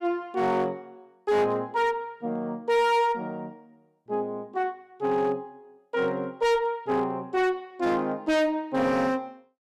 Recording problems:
distorted audio; hard clipping, uneven, signal-to-distortion ratio 6 dB

